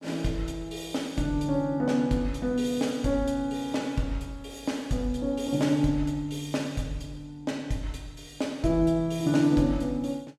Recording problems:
none

